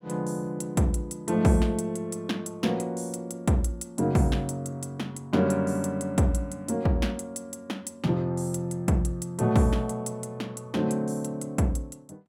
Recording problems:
none

